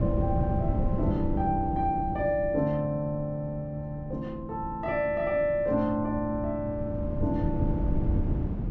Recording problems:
treble missing; nothing above 8 kHz
wind noise; below 180 Hz, SNR 3 dB

